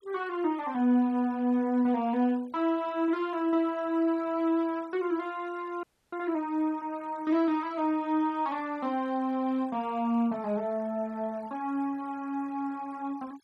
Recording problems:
noise reduction artefacts; signal-to-artefact ratio 24 dB
frozen audio; at 6 s

